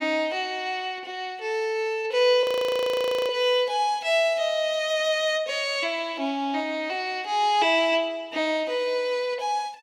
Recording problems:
frozen audio; at 2.5 s for 1 s

